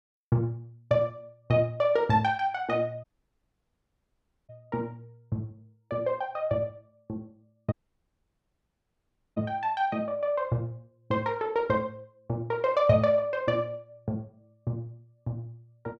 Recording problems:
audio cutting out; at 3 s for 1.5 s and at 7.5 s for 1.5 s

